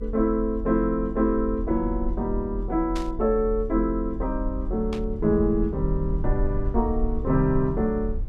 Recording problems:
low-frequency rumble; below 54 Hz, strongest tone 40 Hz, SNR 7 dB
burst of static; at 3 s and at 5 s; peak -8 dB vs average level

